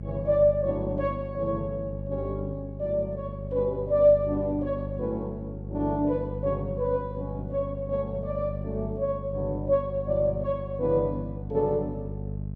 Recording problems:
hum; 50 Hz, harmonics up to 450 Hz, SNR 8 dB

